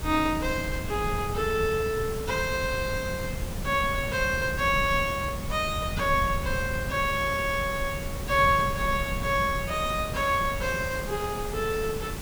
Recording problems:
hiss; slope -4 dB per octave, SNR 11 dB
wind on the microphone; below 140 Hz, SNR 9 dB

